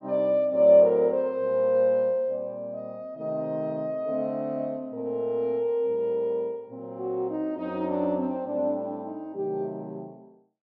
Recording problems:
none

